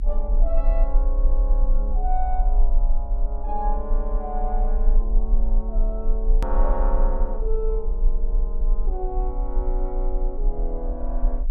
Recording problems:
low-frequency rumble; below 36 Hz, strongest tone 30 Hz, SNR -7 dB
edit click; at 6.5 s

